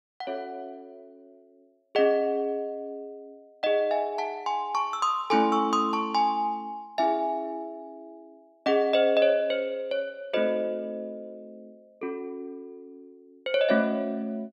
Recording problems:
none

